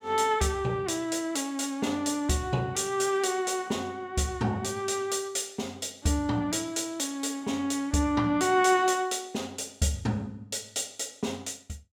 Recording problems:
none

